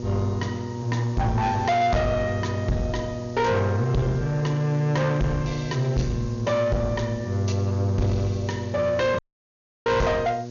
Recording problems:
low-pass filter; nothing above 6.8 kHz
distorted audio; soft clipping, signal-to-distortion ratio 6 dB
electrical hum; 60 Hz, harmonics up to 960 Hz, SNR 9 dB
hiss; slope +1 dB per octave, SNR 24 dB
dropout; at 9 s for 0.5 s

